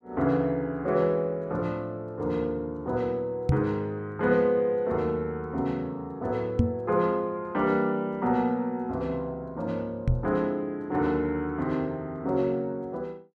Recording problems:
microphone thump; at 3.5 s, at 6.5 s and at 10 s; peak +9 dB vs average level

